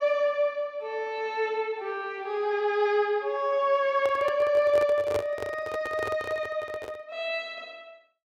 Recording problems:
handling noise; from 4 to 7 s; peak 0 dB vs average level

